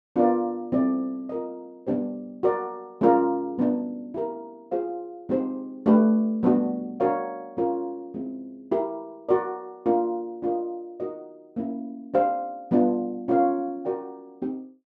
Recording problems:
none

